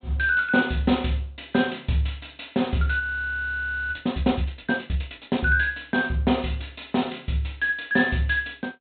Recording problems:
treble cut off; nothing above 4 kHz
audio freezing; at 3 s for 1 s

